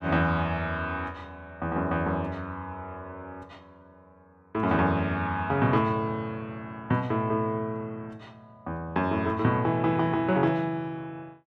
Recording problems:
none

